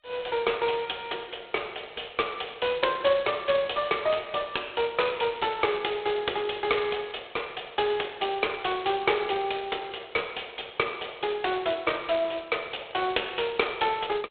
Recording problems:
telephone audio; 340 Hz to 3.6 kHz, G.726
crackling; from 5 to 6 s; loose cable, SNR 21 dB

